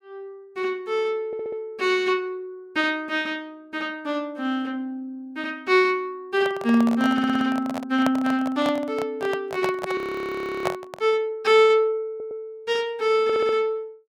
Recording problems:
audio stuttering; 4 times, first at 1.5 s
microphone handling noise; from 6.5 to 11 s; peak +2 dB vs average level
audio freezing; at 10 s for 0.5 s

